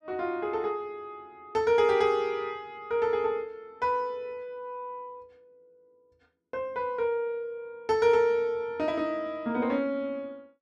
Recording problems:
none

